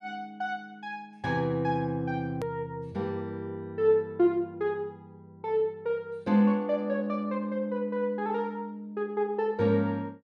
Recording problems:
click at an edit; at 2.5 s

